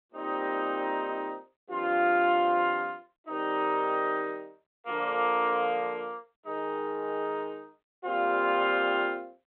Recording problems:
telephone audio; 320 Hz to 3.4 kHz, G.726

